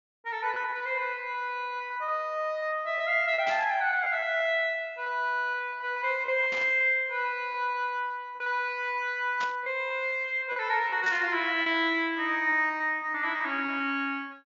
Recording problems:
treble missing; nothing above 7.2 kHz
lost packets; 8% of the sound replaced, filled with repeated pitch periods
static burst; 4 times, first at 3.5 s; peak -7 dB vs average level

